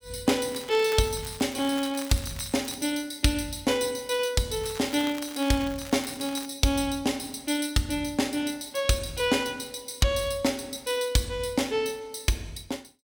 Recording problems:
crackle; from 0.5 to 3 s and from 4.5 to 6.5 s; loose cable, SNR 15 dB

